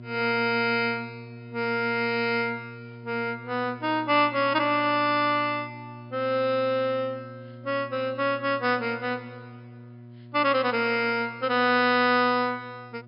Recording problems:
low-pass filter; nothing above 5.5 kHz
hum; 60 Hz, harmonics up to 960 Hz, SNR 19 dB

